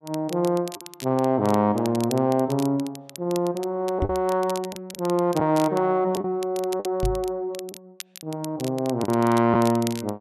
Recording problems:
crackle; vinyl, SNR 17 dB
packet loss; 3% of the sound replaced, filled with the last packet
microphone bump; at 4 s and at 7 s; peak +1 dB vs average level

